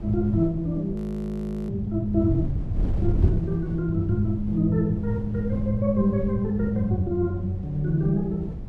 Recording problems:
wind on the microphone; below 130 Hz, SNR 8 dB
audio freezing; at 1 s for 0.5 s

